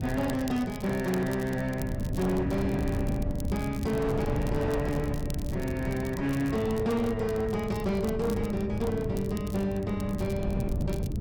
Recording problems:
distortion; hard clipping, signal-to-distortion ratio 11 dB
wind noise; below 200 Hz, SNR 5 dB
crackle; vinyl, SNR 19 dB

